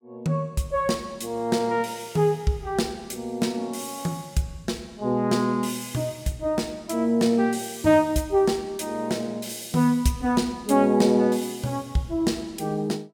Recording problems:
none

